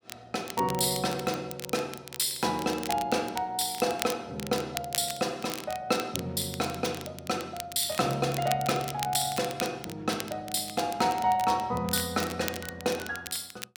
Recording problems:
crackling; vinyl, SNR 11 dB

